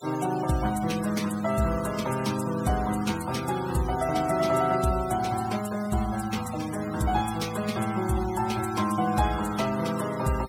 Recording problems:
denoising artefacts; signal-to-artefact ratio 14 dB

